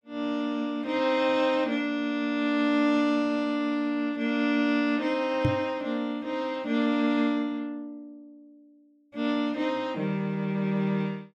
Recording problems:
knock on the microphone; at 5.5 s; peak +5 dB vs average level

